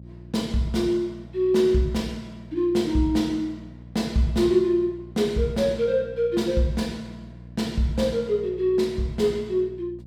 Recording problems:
electrical hum; 60 Hz, harmonics up to 540 Hz, SNR 19 dB

